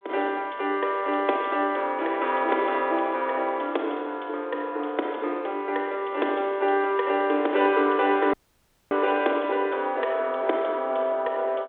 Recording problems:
telephone audio; 260 Hz to 3.6 kHz, G.726
dropout; at 8.5 s for 0.5 s

